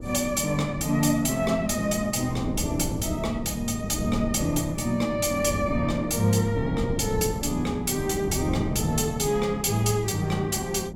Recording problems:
wind on the microphone; below 270 Hz, SNR 8 dB

